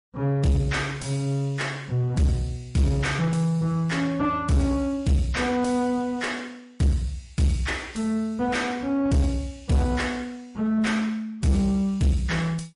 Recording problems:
codec artefacts; MP3, log-spectral distance 2 dB, nothing above 10.4 kHz
distortion; soft clipping, signal-to-distortion ratio 7 dB

